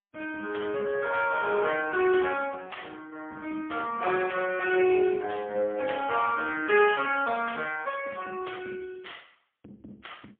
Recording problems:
telephone audio; 240 Hz to 3.4 kHz, AMR-NB, then MP3

